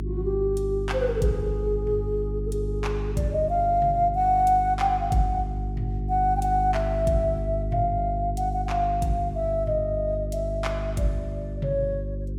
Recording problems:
hum; 50 Hz, harmonics up to 400 Hz, SNR 5 dB

